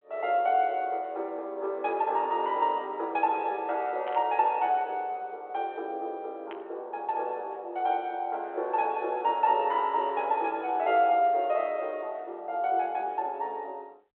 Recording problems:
telephone audio; 340 Hz to 3.3 kHz, G.726
static burst; at 4 s and at 6.5 s; peak -12 dB vs average level

